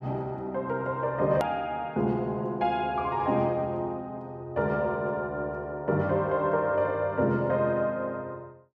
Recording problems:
hard cut with a click; at 1.5 s

